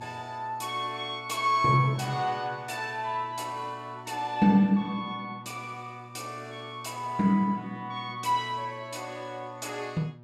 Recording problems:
hum; 60 Hz, harmonics up to 1.2 kHz, SNR 20 dB

